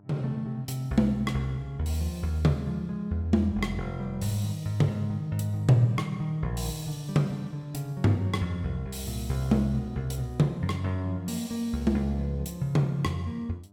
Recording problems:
electrical hum; 50 Hz, harmonics up to 1 kHz, SNR 27 dB

